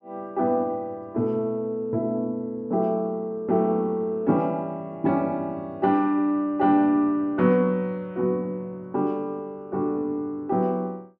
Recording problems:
none

